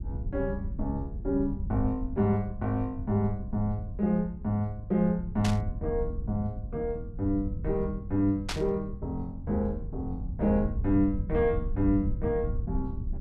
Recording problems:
rumble; below 98 Hz, SNR 7 dB
burst of static; at 5.5 s and at 8.5 s; peak +1 dB vs average level

